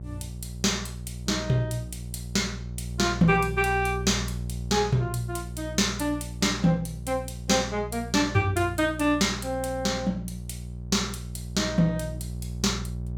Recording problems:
hum; 60 Hz, harmonics up to 420 Hz, SNR 10 dB

